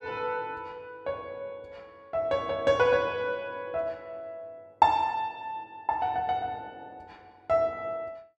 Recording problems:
none

